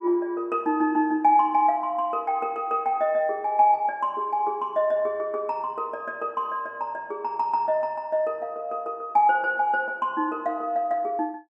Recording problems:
none

